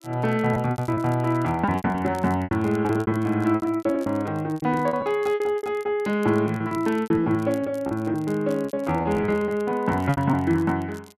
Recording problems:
crackling; vinyl, SNR 27 dB
lost packets; 17% of the sound replaced, filled with repeated pitch periods

